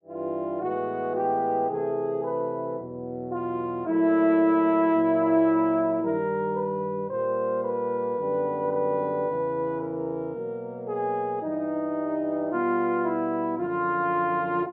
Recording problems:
none

